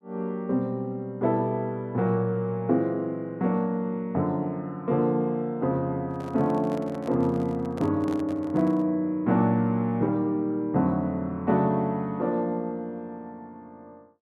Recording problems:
handling noise; from 6 to 9 s; peak -9 dB vs average level

